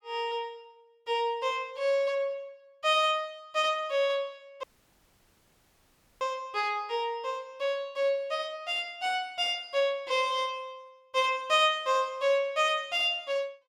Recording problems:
dropout; at 4.5 s for 1.5 s

